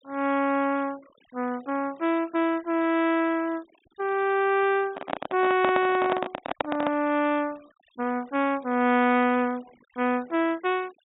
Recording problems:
treble missing; nothing above 4 kHz
denoising artefacts; signal-to-artefact ratio 25 dB
microphone handling noise; from 5 to 7 s; peak +2 dB vs average level

